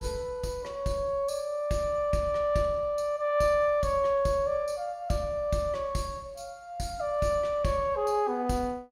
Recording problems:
none

